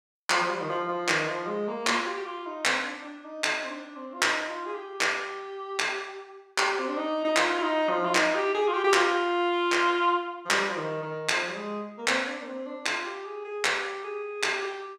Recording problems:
none

